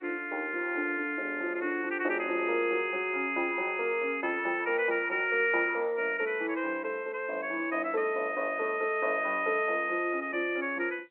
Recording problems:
telephone audio; 300 Hz to 3.1 kHz, G.711

